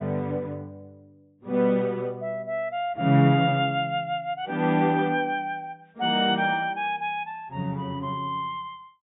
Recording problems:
treble cut off; nothing above 4 kHz

